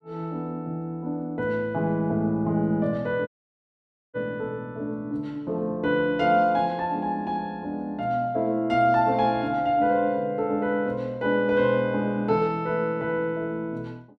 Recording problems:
dropout; at 3.5 s for 1 s

